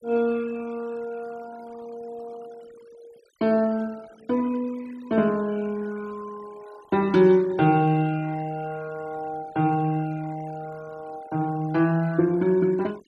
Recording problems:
noise reduction artefacts; signal-to-artefact ratio 24 dB

